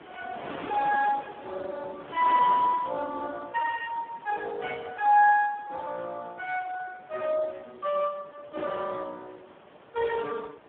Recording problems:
phone line; 190 Hz to 2.5 kHz, Speex
wind noise; below 1.3 kHz, SNR 16 dB

